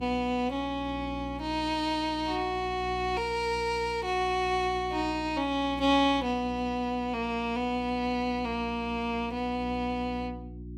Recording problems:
electrical hum; 60 Hz, harmonics up to 360 Hz, SNR 14 dB

